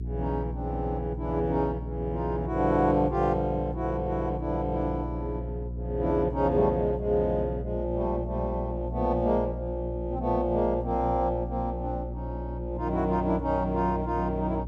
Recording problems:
mains hum; 60 Hz, harmonics up to 420 Hz, SNR 7 dB

